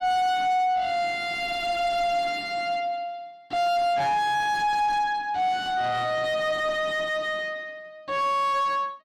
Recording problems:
distortion; soft clipping, signal-to-distortion ratio 5 dB

